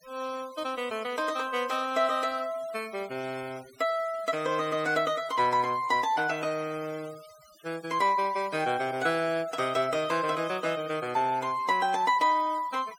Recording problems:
denoising artefacts; signal-to-artefact ratio 20 dB

